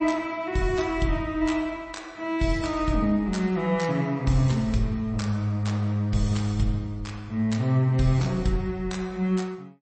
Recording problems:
lossy codec; MP3, log-spectral distance 2 dB, nothing above 8.2 kHz

